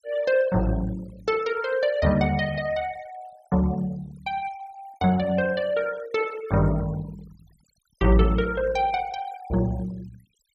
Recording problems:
denoising artefacts; signal-to-artefact ratio 21 dB

